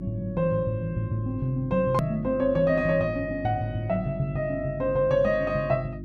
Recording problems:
electrical hum; 50 Hz, harmonics up to 350 Hz, SNR 12 dB
click at an edit; at 2 s

